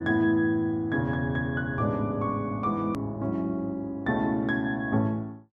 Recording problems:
click at an edit; at 3 s

